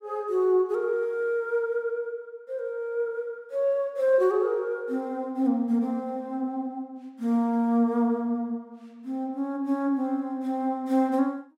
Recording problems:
none

